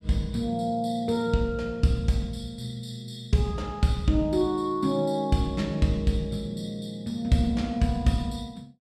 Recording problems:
none

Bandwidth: 14 kHz